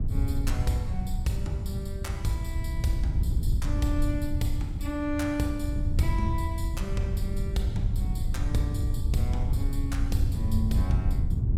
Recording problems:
wind on the microphone; below 98 Hz, SNR -3 dB

